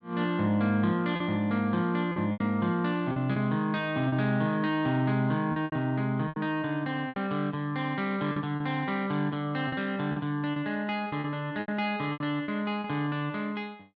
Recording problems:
lost packets; 8% of the sound replaced, filled with repeated pitch periods

